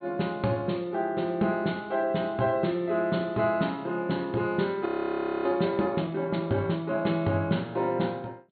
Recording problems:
low-pass filter; nothing above 4.4 kHz
audio freezing; at 5 s for 0.5 s

